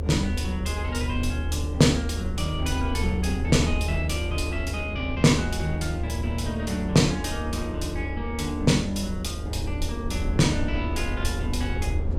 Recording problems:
hum; 50 Hz, harmonics up to 550 Hz, SNR 12 dB
low-frequency rumble; below 78 Hz, strongest tone 76 Hz, SNR 4 dB

